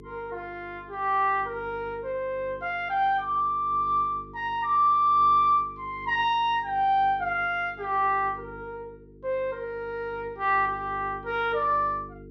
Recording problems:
hum; 50 Hz, harmonics up to 450 Hz, SNR 21 dB

